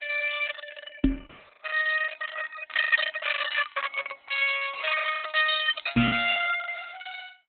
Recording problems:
lossy compression; Opus, log-spectral distance 6 dB, nothing above 4 kHz
packet loss; 7% of the sound replaced, filled with the last packet
microphone thump; at 1 s and at 6 s; peak +8 dB vs average level

